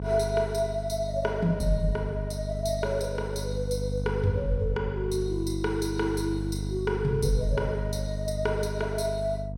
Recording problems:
hum; 50 Hz, harmonics up to 500 Hz, SNR 4 dB

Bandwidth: 16 kHz